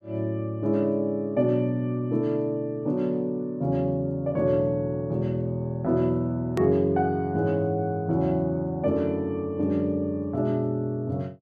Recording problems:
edit click; at 6.5 s

